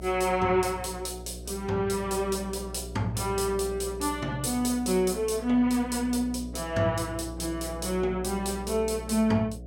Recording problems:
mains hum; 60 Hz, harmonics up to 720 Hz, SNR 13 dB

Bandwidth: 17.5 kHz